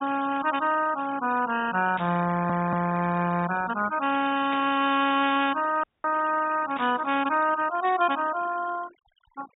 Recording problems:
treble cut off; nothing above 4 kHz
noise reduction artefacts; signal-to-artefact ratio 14 dB
static burst; at 2 s, at 4.5 s and at 7 s; peak -8 dB vs average level
stutter; at 2.5 s
audio cutting out; at 6 s

